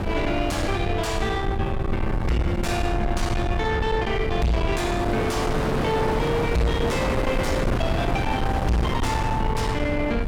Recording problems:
distorted audio; soft clipping, signal-to-distortion ratio 7 dB
rumble; below 190 Hz, SNR 3 dB
wind on the microphone; below 1.1 kHz, SNR 4 dB

